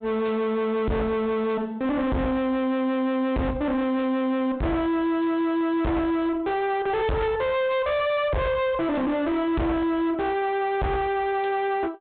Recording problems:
treble missing; nothing above 4 kHz
distortion; hard clipping, signal-to-distortion ratio 6 dB

